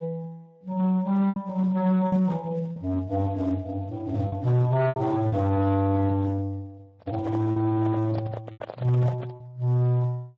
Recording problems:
codec artefacts; MP3, then Speex, log-spectral distance 2 dB
distorted audio; hard clipping, uneven, signal-to-distortion ratio 10 dB
packet loss; 5% of the sound replaced, filled with repeated pitch periods
handling noise; from 7 to 9.5 s; peak -6 dB vs average level

